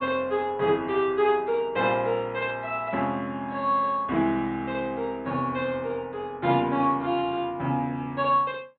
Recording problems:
treble missing; nothing above 4 kHz

